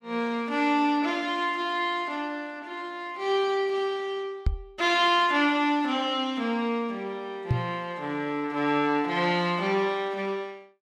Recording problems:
microphone thump; at 4.5 s and at 7.5 s; peak +5 dB vs average level

